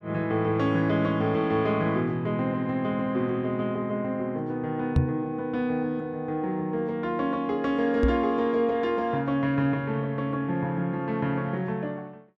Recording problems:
microphone thump; at 5 s and at 8 s; peak +8 dB vs average level

